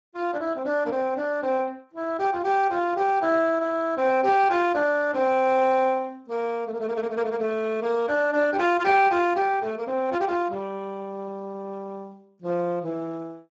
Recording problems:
lossy codec; Speex, log-spectral distance 3 dB

